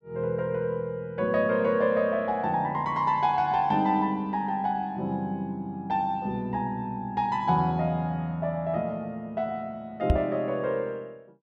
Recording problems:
knock on the microphone; at 10 s; peak +8 dB vs average level

